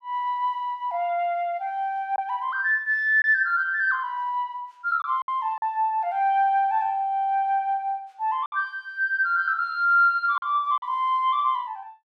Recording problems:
lost packets; 3% of the sound replaced, filled with silence

